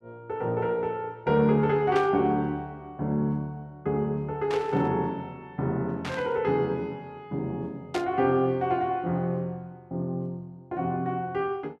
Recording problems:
static burst; 4 times, first at 2 s; peak -4 dB vs average level

